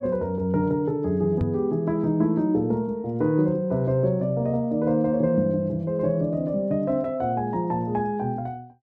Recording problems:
microphone thump; at 1.5 s; peak +2 dB vs average level

